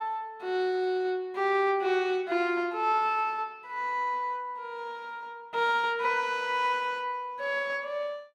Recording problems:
none

